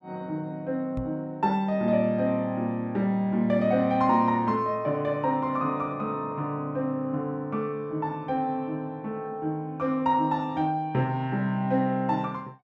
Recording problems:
knock on the microphone; at 1 s; peak -4 dB vs average level

